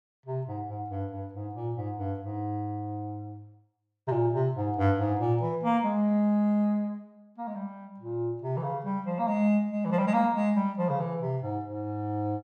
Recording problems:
none

